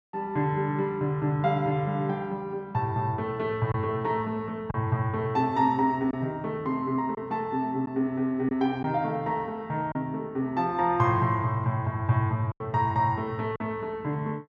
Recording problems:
lost packets; 2% of the sound replaced, filled with silence

